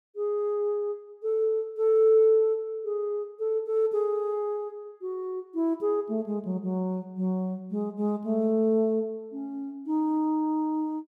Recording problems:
none

